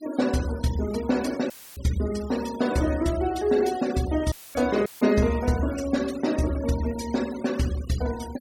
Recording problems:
noise reduction artefacts; signal-to-artefact ratio 17 dB
audio cutting out; at 1.5 s, at 4.5 s and at 5 s; filled with static

